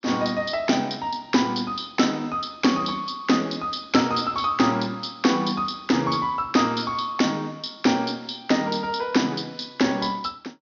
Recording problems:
treble cut off; nothing above 6.4 kHz

